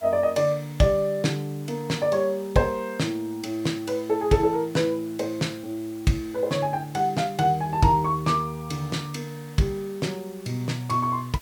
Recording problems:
background hiss; slope -1 dB per octave, SNR 23 dB

